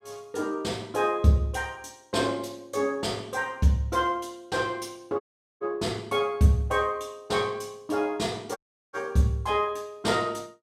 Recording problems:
dropout; at 5 s and at 8.5 s

